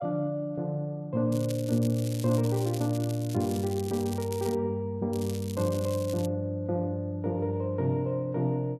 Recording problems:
crackle; from 1.5 to 4.5 s and from 5 to 6.5 s; loose cable, SNR 15 dB

